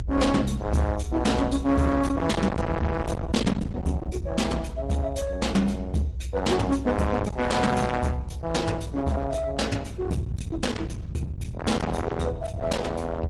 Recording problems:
lossy codec; MP3, then Opus, log-spectral distance 2 dB, nothing above 12 kHz
distortion; hard clipping, signal-to-distortion ratio 7 dB
rumble; below 280 Hz, SNR 6 dB

